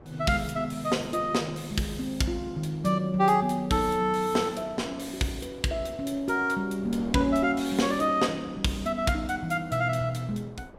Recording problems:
wind noise; below 660 Hz, SNR 21 dB

